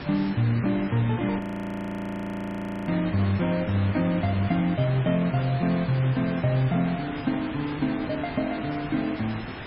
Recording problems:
lossy codec; MP3, log-spectral distance 5 dB, nothing above 13.1 kHz
hiss; SNR 11 dB
frozen audio; at 1.5 s for 1.5 s

